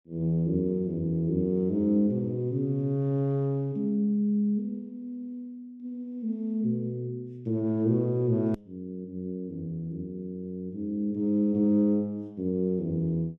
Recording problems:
click at an edit; at 8.5 s

